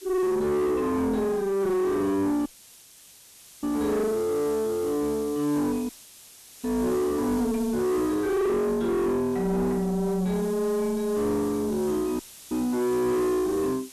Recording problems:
distorted audio; soft clipping, signal-to-distortion ratio 6 dB
background hiss; slope +1 dB per octave, SNR 19 dB
audio cutting out; at 2.5 s for 1 s, at 6 s for 0.5 s and at 12 s

